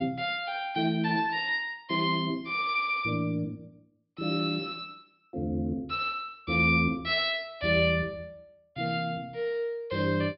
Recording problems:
low-pass filter; nothing above 5.5 kHz

